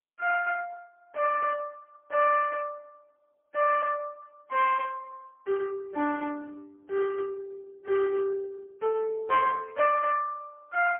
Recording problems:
phone line; 320 Hz to 2.8 kHz, AMR-NB, then MP3

